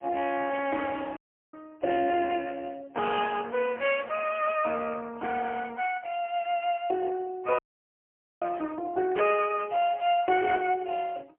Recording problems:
telephone audio; 280 Hz to 2.9 kHz, AMR-NB, then MP3
audio cutting out; at 1 s and at 7.5 s for 1 s

